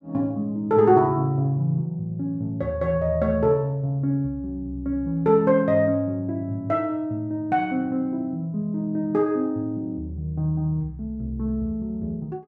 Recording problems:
none

